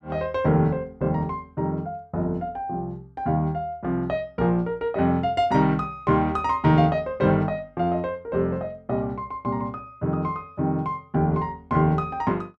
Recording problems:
none

